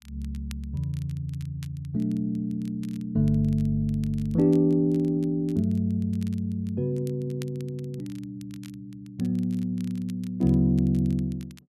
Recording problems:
crackling; vinyl, SNR 27 dB

